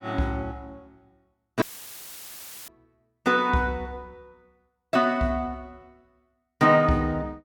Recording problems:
dropout; at 1.5 s for 1 s; filled with static

